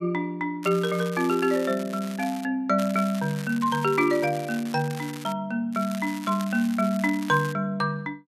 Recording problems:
crackling; from 0.5 to 2.5 s, from 3 to 5.5 s and from 5.5 to 7.5 s; loose cable, SNR 16 dB

